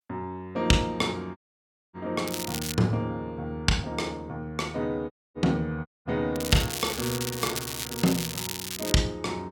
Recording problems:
audio cutting out; at 1.5 s for 0.5 s, at 5 s and at 6 s
crackling; at 2.5 s and from 6.5 to 9 s; loose cable, SNR 4 dB

